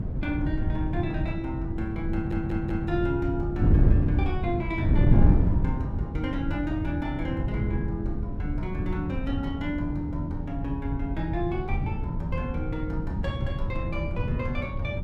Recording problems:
rumble; below 82 Hz, SNR 10 dB
wind on the microphone; below 150 Hz, SNR -3 dB
audio stuttering; at 2 s

